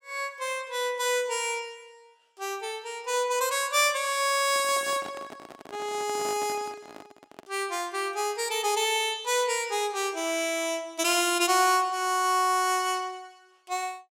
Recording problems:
handling noise; from 4.5 to 7.5 s; peak -10 dB vs average level

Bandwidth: 16.5 kHz